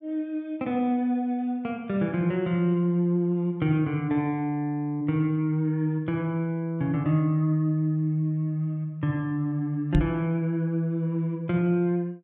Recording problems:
microphone bump; at 10 s; peak +6 dB vs average level

